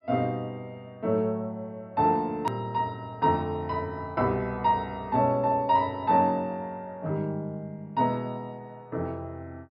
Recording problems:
low-pass filter; nothing above 5.5 kHz
click at an edit; at 2.5 s

